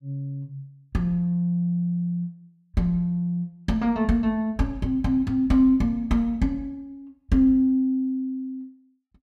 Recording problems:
none

